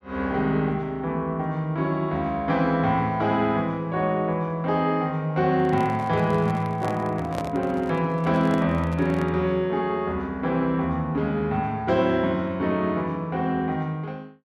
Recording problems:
handling noise; from 5.5 to 9.5 s; peak -3 dB vs average level

